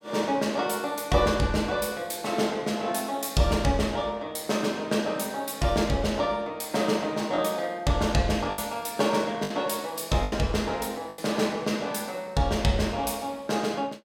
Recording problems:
lost packets; 2% of the sound replaced, filled with the last packet

